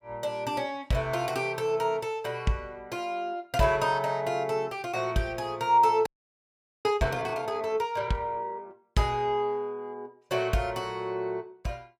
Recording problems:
frozen audio; at 6 s for 1 s

